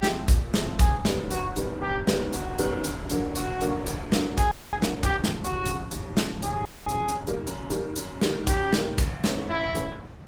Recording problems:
lossy codec; Opus, log-spectral distance 4 dB, nothing above 19 kHz
low-frequency rumble; below 140 Hz, SNR 11 dB
wind on the microphone; below 530 Hz, SNR 16 dB
audio freezing; at 4.5 s and at 6.5 s

